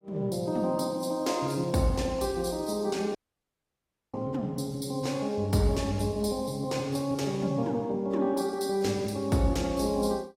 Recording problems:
lossy compression; AAC, log-spectral distance 3 dB, nothing above 15.5 kHz
dropout; at 3 s for 1 s

